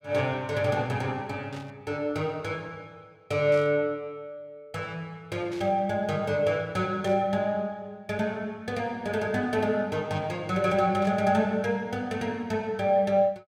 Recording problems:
burst of static; 5 times, first at 1.5 s; peak -14 dB vs average level

